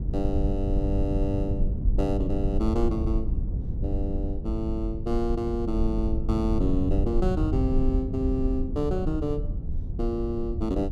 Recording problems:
rumble; below 86 Hz, SNR 0 dB

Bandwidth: 14 kHz